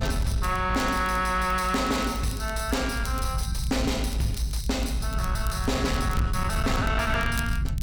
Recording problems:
distortion; soft clipping, signal-to-distortion ratio 11 dB
rumble; below 98 Hz, SNR 3 dB
crackle; vinyl, SNR 18 dB

